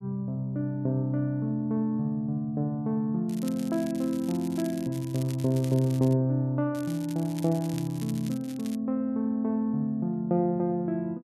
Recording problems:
crackling; from 3.5 to 6 s and from 7 to 9 s; loose cable, SNR 19 dB

